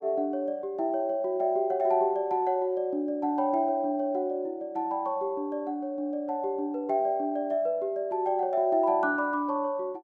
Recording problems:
none

